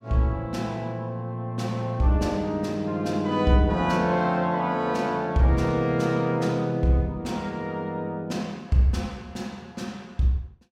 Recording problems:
none

